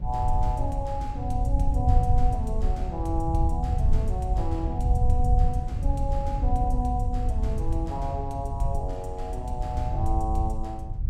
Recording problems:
rumble; below 82 Hz, SNR -4 dB
wind noise; below 170 Hz, SNR 11 dB

